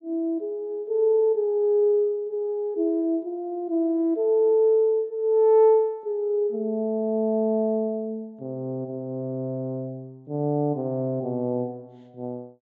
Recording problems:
treble cut off; nothing above 8 kHz

